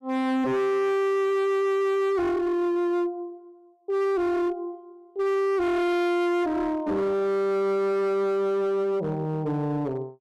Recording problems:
distortion; hard clipping, signal-to-distortion ratio 7 dB

